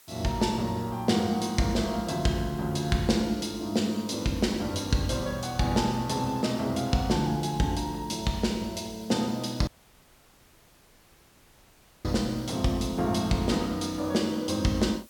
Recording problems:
hiss; slope 0 dB per octave, SNR 24 dB
dropout; at 9.5 s for 2.5 s

